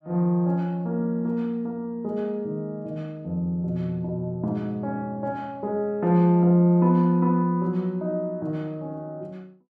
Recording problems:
none

